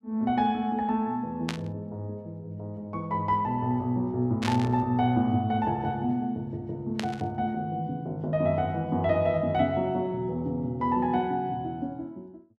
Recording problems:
static burst; at 1.5 s, at 4.5 s and at 7 s; peak 0 dB vs average level

